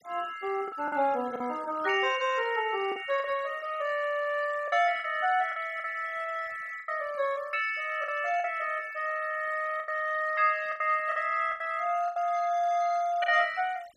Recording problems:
noise reduction artefacts; signal-to-artefact ratio 21 dB
lost packets; 7% of the sound replaced, filled with the last packet

